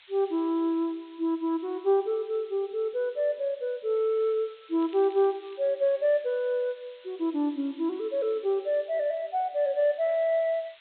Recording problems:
low-pass filter; nothing above 4 kHz
background hiss; SNR 27 dB
crackle; at 5 s; loose cable, SNR 27 dB

